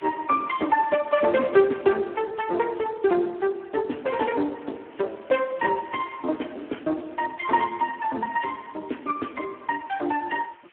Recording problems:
telephone audio; 240 Hz to 3.3 kHz, Speex
background hiss; SNR 27 dB

